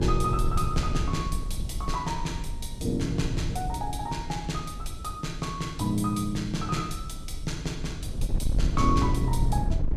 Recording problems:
wind noise; below 88 Hz, SNR 3 dB

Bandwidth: 15 kHz